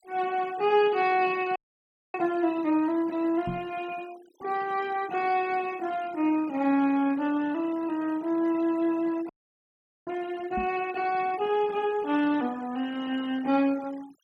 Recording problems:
noise reduction artefacts; signal-to-artefact ratio 22 dB
frozen audio; at 1.5 s for 0.5 s and at 9.5 s for 1 s
microphone thump; at 3.5 s and at 11 s; peak -3 dB vs average level

